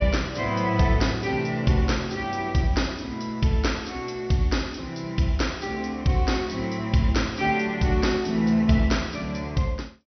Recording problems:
treble cut off; nothing above 6 kHz

